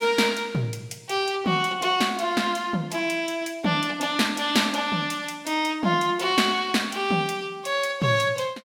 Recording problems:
none

